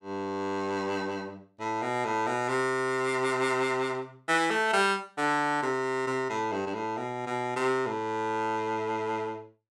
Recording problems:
none

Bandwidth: 16.5 kHz